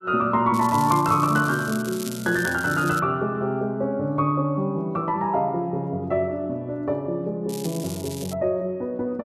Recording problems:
crackling; from 0.5 to 3 s and at 7.5 s; loose cable, SNR 14 dB

